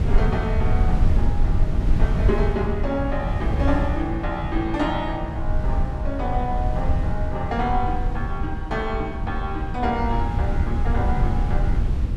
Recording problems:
wind noise; below 90 Hz, SNR -2 dB

